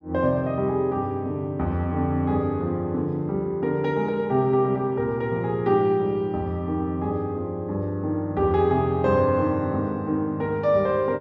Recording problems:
none

